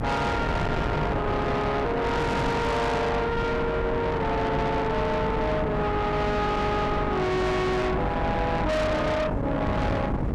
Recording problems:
distortion; soft clipping, signal-to-distortion ratio 6 dB
hum; 50 Hz, harmonics up to 300 Hz, SNR 12 dB
wind on the microphone; below 810 Hz, SNR 4 dB

